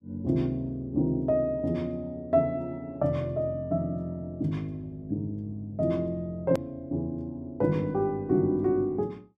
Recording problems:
click at an edit; at 6.5 s

